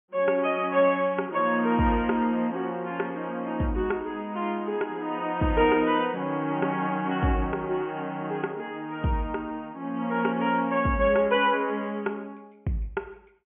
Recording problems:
treble cut off; nothing above 3.2 kHz

